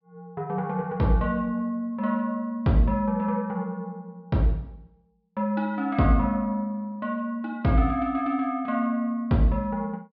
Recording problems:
treble missing; nothing above 5.5 kHz

